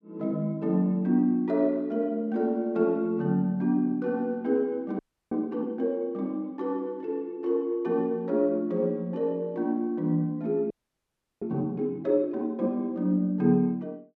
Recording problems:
frozen audio; at 5 s and at 11 s for 0.5 s

